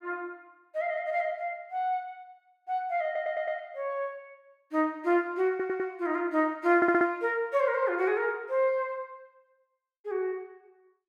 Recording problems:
audio stuttering; at 3 s, at 5.5 s and at 7 s

